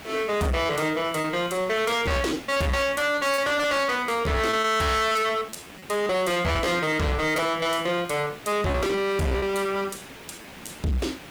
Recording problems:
distortion; hard clipping, signal-to-distortion ratio 6 dB
background hiss; SNR 18 dB
packet loss; 15% of the sound replaced, filled with repeated pitch periods

